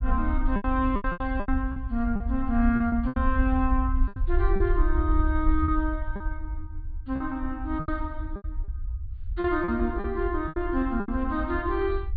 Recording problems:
treble missing; nothing above 4.7 kHz
rumble; below 62 Hz, SNR 3 dB
lost packets; 11% of the sound replaced, filled with repeated pitch periods

